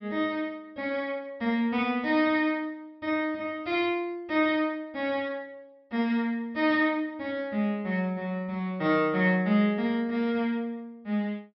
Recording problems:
treble cut off; nothing above 5.9 kHz

